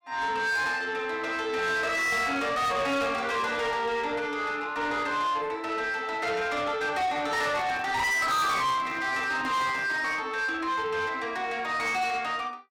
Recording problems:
distorted audio; soft clipping, signal-to-distortion ratio 8 dB
microphone handling noise; from 7.5 to 10 s; peak -10 dB vs average level

